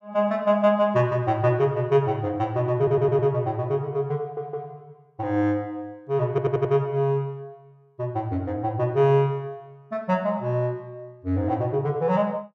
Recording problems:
stutter; at 3 s, at 4 s and at 6.5 s

